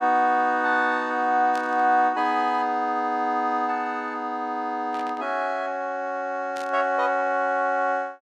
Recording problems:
burst of static; at 1.5 s, at 5 s and at 6.5 s; peak -12 dB vs average level

